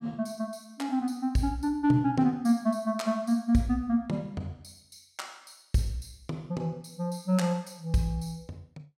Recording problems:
none

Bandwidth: 16 kHz